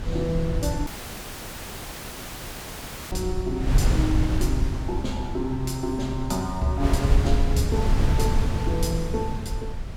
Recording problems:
wind on the microphone; below 120 Hz, SNR -2 dB
audio cutting out; at 1 s for 2.5 s

